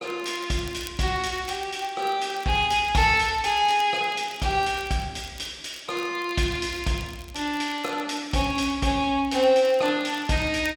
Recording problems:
crackle; vinyl, SNR 24 dB

